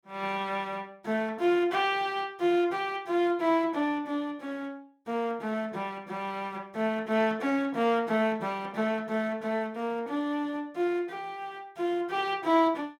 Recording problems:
none

